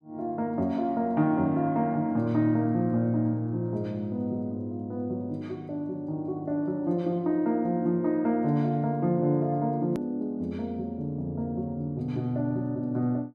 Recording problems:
hard cut with a click; at 10 s

